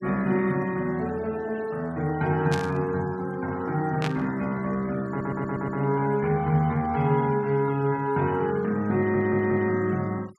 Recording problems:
noise reduction artefacts; signal-to-artefact ratio 23 dB
static burst; at 2.5 s and at 4 s; peak -2 dB vs average level
audio stuttering; at 5 s and at 9 s

